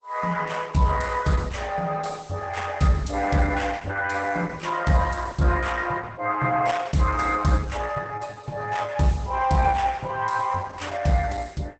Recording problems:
codec artefacts; Opus, log-spectral distance 5 dB, nothing above 8 kHz

